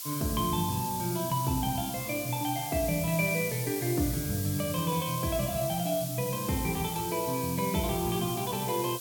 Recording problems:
hiss; SNR 6 dB

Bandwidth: 17.5 kHz